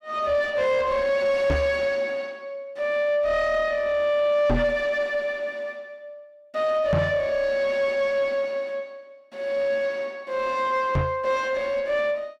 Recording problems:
distortion; soft clipping, signal-to-distortion ratio 10 dB
microphone bump; 4 times, first at 1.5 s; peak +6 dB vs average level

